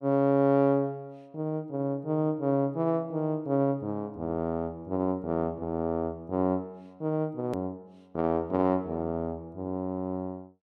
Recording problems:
hard cut with a click; at 7.5 s

